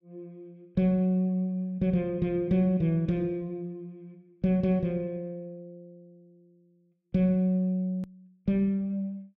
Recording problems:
edit click; at 8 s

